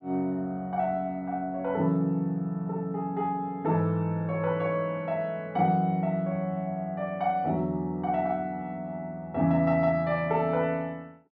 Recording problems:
none

